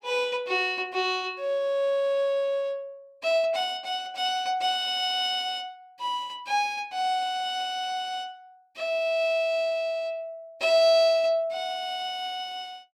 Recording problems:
none

